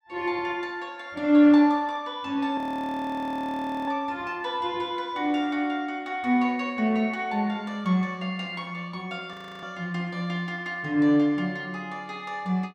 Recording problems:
audio freezing; at 2.5 s for 1.5 s and at 9.5 s

